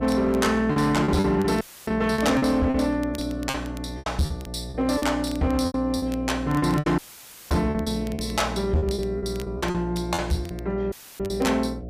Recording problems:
distortion; hard clipping, signal-to-distortion ratio 11 dB
mains hum; 60 Hz, harmonics up to 720 Hz, SNR 11 dB
crackle; vinyl, SNR 23 dB
packet loss; 12% of the sound replaced, filled with repeated pitch periods
dropout; at 1.5 s, at 7 s for 0.5 s and at 11 s; filled with static

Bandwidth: 15 kHz